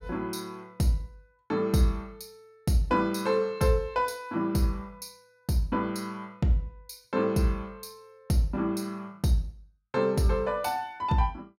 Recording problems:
none

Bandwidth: 16 kHz